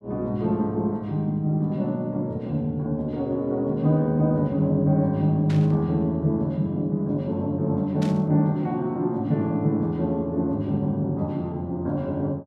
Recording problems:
burst of static; at 5.5 s and at 8 s; peak -11 dB vs average level

